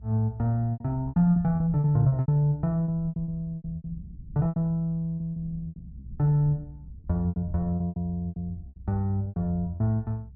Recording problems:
rumble; below 130 Hz, SNR 17 dB
lost packets; 15% of the sound replaced, filled with repeated pitch periods

